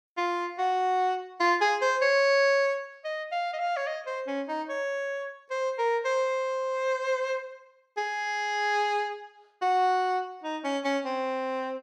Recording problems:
none

